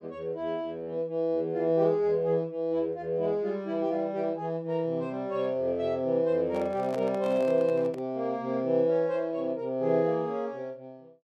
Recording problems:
microphone handling noise; from 6.5 to 8 s; peak -7 dB vs average level

